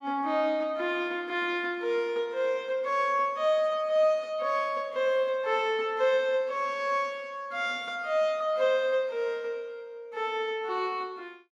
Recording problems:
none

